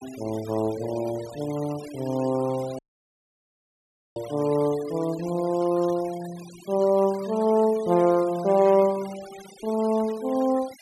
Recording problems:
denoising artefacts; signal-to-artefact ratio 20 dB
audio cutting out; at 3 s for 1.5 s

